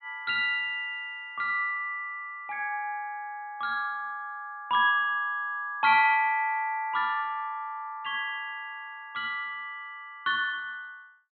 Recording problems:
treble cut off; nothing above 4 kHz

